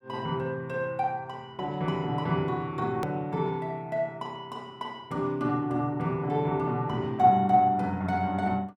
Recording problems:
hard cut with a click; at 3 s

